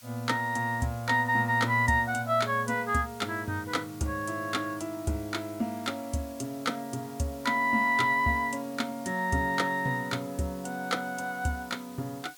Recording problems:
background hiss; slope +2 dB per octave, SNR 21 dB

